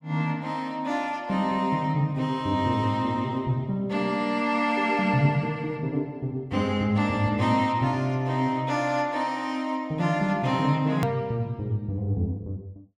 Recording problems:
click at an edit; at 11 s

